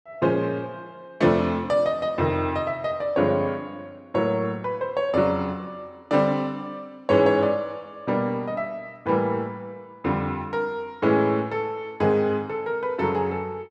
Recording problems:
none

